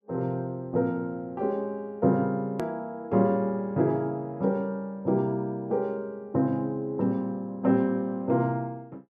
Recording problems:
edit click; at 2.5 s

